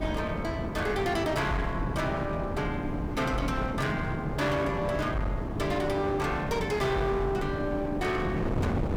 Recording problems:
distorted audio; hard clipping, uneven, signal-to-distortion ratio 10 dB
hiss; slope -6 dB per octave, SNR 27 dB
wind on the microphone; below 370 Hz, SNR 4 dB

